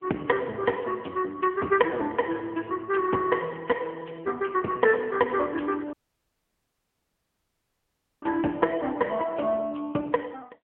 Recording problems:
telephone audio; 260 Hz to 2.8 kHz, AMR-NB
audio cutting out; at 6 s for 2.5 s

